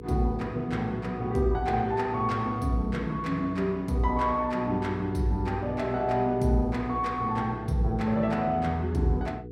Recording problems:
hum; 60 Hz, harmonics up to 480 Hz, SNR 13 dB

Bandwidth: 16.5 kHz